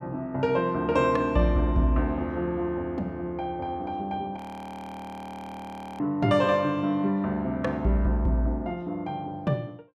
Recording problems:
audio freezing; at 4.5 s for 1.5 s

